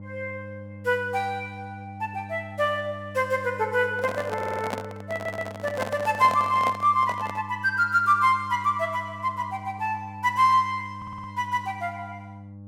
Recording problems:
electrical hum; 50 Hz, harmonics up to 800 Hz, SNR 16 dB
handling noise; from 4 to 7.5 s; peak 0 dB vs average level
stutter; at 4.5 s, at 5 s and at 11 s

